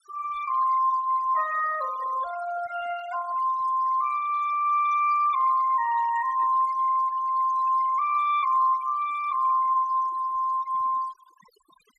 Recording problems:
denoising artefacts; signal-to-artefact ratio 19 dB

